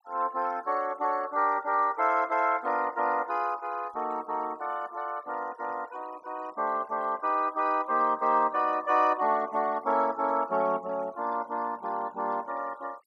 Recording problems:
noise reduction artefacts; signal-to-artefact ratio 23 dB

